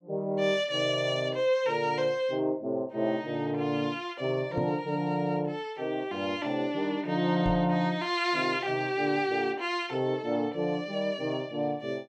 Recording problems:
microphone bump; at 4.5 s and at 7.5 s; peak 0 dB vs average level

